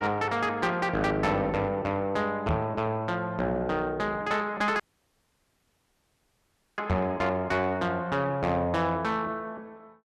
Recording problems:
distortion; soft clipping, signal-to-distortion ratio 10 dB
knock on the microphone; at 2.5 s and at 7 s; peak +4 dB vs average level
audio cutting out; at 5 s for 2 s

